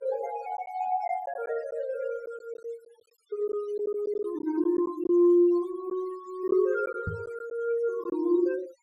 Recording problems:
noise reduction artefacts; signal-to-artefact ratio 22 dB
packet loss; 5% of the sound replaced, filled with silence
microphone thump; at 7 s; peak -1 dB vs average level

